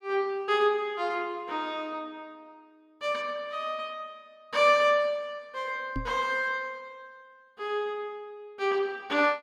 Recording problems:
knock on the microphone; at 6 s; peak -2 dB vs average level

